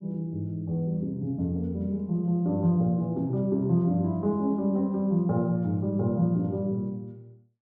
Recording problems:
none

